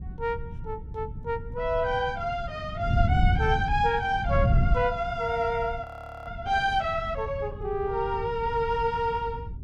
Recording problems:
wind noise; below 120 Hz, SNR 4 dB
frozen audio; at 6 s

